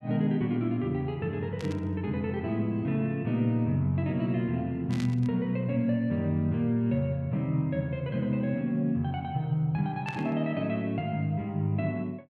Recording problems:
static burst; at 1.5 s, at 5 s and at 10 s; peak -7 dB vs average level

